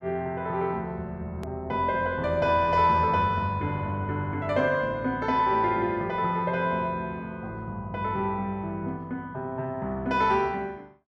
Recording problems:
click at an edit; at 1.5 s

